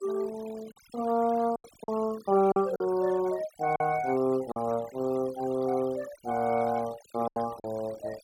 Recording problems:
noise reduction artefacts; signal-to-artefact ratio 20 dB
lost packets; 5% of the sound replaced, filled with silence

